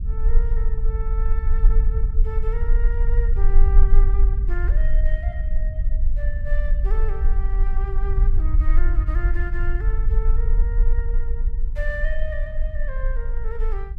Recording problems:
low-frequency rumble; below 44 Hz, strongest tone 24 Hz, SNR -13 dB

